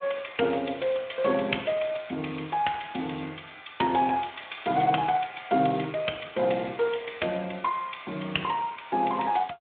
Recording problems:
phone line; 220 Hz to 3.4 kHz, Speex

